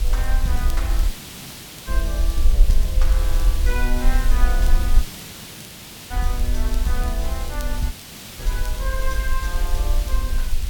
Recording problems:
hiss; SNR 3 dB
rumble; below 48 Hz, strongest tone 20 Hz, SNR -7 dB
crackling; vinyl, SNR 17 dB
audio cutting out; at 1 s for 1 s, at 5 s for 1 s and at 8 s

